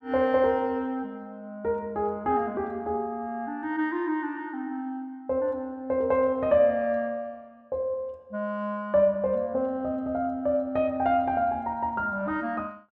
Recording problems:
none

